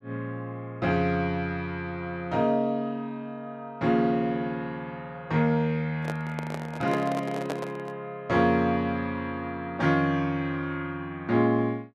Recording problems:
handling noise; from 6 to 8 s; peak -1 dB vs average level

